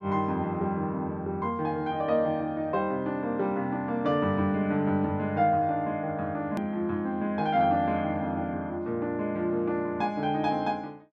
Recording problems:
click at an edit; at 6.5 s

